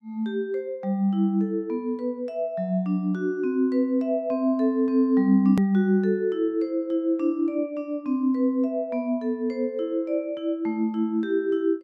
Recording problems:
edit click; at 5.5 s

